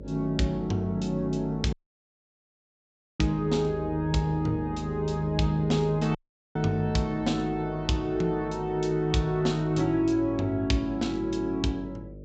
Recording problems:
treble cut off; nothing above 8 kHz
hum; 50 Hz, harmonics up to 600 Hz, SNR 14 dB
audio cutting out; at 1.5 s for 1.5 s and at 6 s

